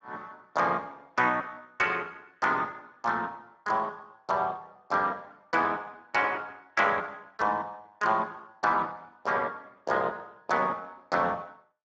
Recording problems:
lossy compression; Speex, log-spectral distance 3 dB

